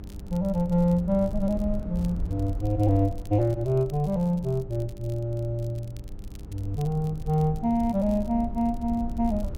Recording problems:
hum; 50 Hz, harmonics up to 900 Hz, SNR 22 dB
low-frequency rumble; below 78 Hz, SNR 11 dB
crackling; vinyl, SNR 29 dB

